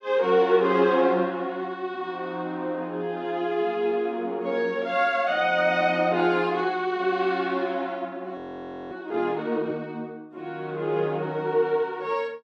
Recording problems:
frozen audio; at 8.5 s for 0.5 s

